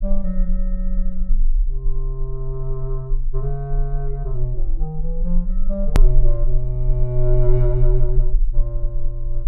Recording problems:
low-frequency rumble; below 32 Hz, strongest tone 20 Hz, SNR -3 dB
edit click; at 6 s

